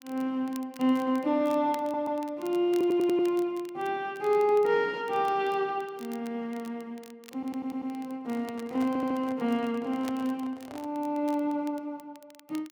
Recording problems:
crackling; vinyl, SNR 24 dB
stutter; 4 times, first at 2 s
microphone handling noise; from 8 to 11 s; peak -11 dB vs average level

